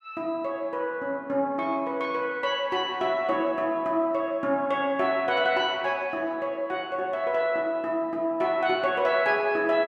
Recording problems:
none

